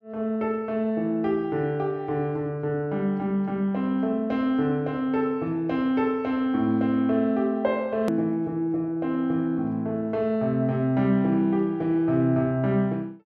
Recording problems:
click at an edit; at 8 s

